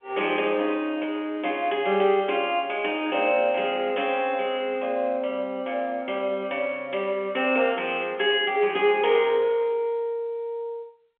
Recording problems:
phone line; 280 Hz to 3.3 kHz, G.711

